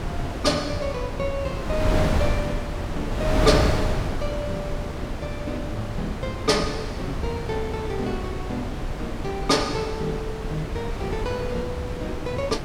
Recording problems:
wind noise; below 470 Hz, SNR 1 dB

